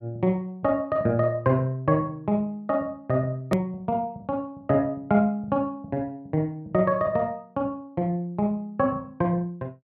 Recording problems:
edit click; at 3.5 s

